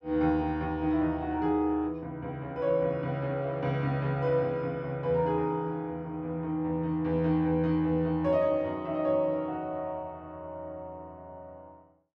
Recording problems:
none

